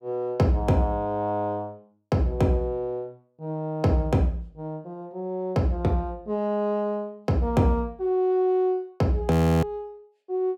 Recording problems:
frozen audio; at 9.5 s

